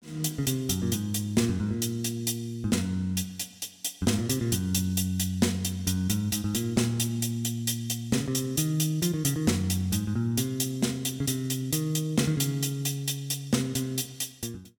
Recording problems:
none

